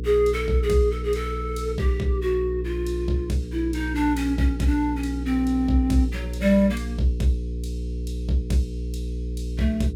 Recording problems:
electrical hum; 60 Hz, harmonics up to 480 Hz, SNR 6 dB

